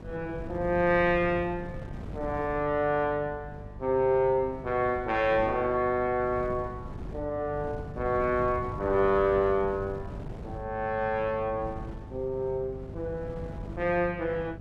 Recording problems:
hum; 50 Hz, harmonics up to 650 Hz, SNR 17 dB
wind noise; below 240 Hz, SNR 15 dB

